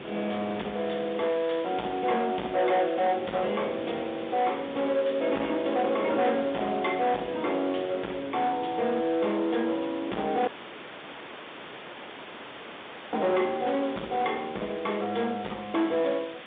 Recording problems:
telephone audio; 240 Hz to 3.7 kHz, G.711
distortion; soft clipping, signal-to-distortion ratio 8 dB
background hiss; SNR 16 dB
wind noise; below 740 Hz, SNR 17 dB
dropout; at 10 s for 2.5 s

